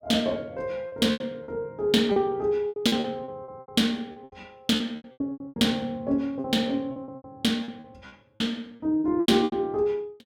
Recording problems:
lost packets; 16% of the sound replaced, filled with repeated pitch periods

